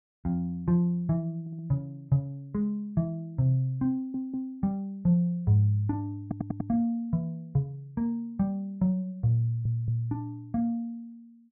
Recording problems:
audio stuttering; 4 times, first at 1.5 s

